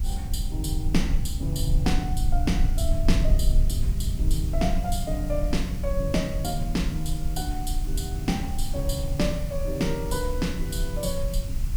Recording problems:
hiss; slope -1 dB per octave, SNR 16 dB
rumble; below 62 Hz, SNR -1 dB

